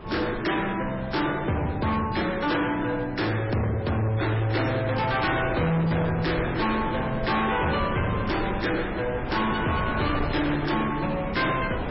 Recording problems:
codec artefacts; MP3, log-spectral distance 5 dB, nothing above 5.5 kHz
distortion; hard clipping, signal-to-distortion ratio 8 dB
wind on the microphone; below 850 Hz, SNR 9 dB

